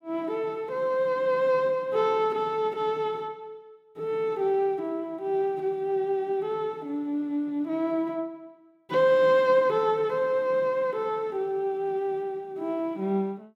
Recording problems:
none

